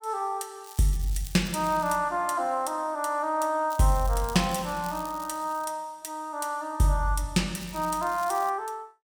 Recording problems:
crackling; from 0.5 to 2 s, from 3.5 to 5.5 s and at 7.5 s; loose cable, SNR 17 dB

